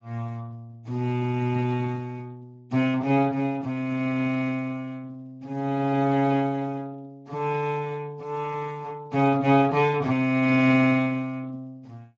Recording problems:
codec artefacts; Speex, log-spectral distance 2 dB

